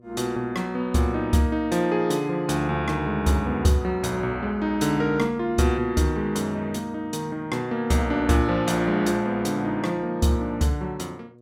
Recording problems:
mains hum; 60 Hz, harmonics up to 720 Hz, SNR 28 dB

